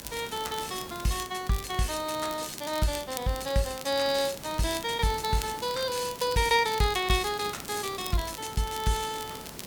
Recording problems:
hiss; slope -4 dB per octave, SNR 14 dB
crackle; vinyl, SNR 13 dB

